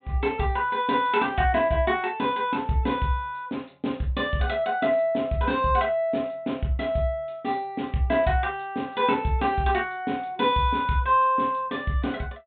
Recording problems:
treble missing; nothing above 4 kHz

